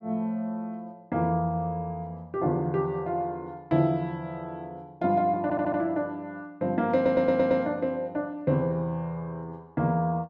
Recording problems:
audio stuttering; at 5.5 s and at 7 s

